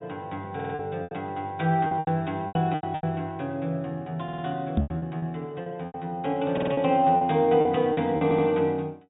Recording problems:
treble cut off; nothing above 4 kHz
lost packets; 12% of the sound replaced, filled with repeated pitch periods
stutter; 4 times, first at 0.5 s
microphone thump; at 5 s; peak +6 dB vs average level

